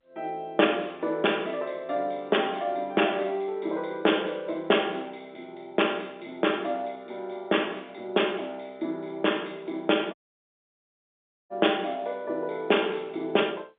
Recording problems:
phone line; 240 Hz to 3.6 kHz, G.711
dropout; at 10 s for 1.5 s

